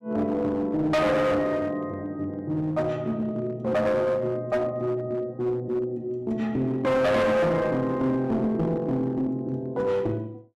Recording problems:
distortion; hard clipping, uneven, signal-to-distortion ratio 7 dB

